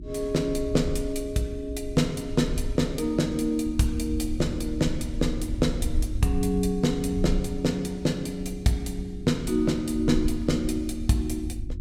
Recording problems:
mains hum; 50 Hz, harmonics up to 350 Hz, SNR 17 dB
low-frequency rumble; below 70 Hz, SNR 9 dB

